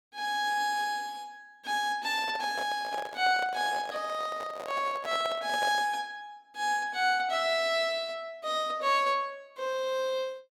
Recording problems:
handling noise; from 2 to 6 s; peak -4 dB vs average level

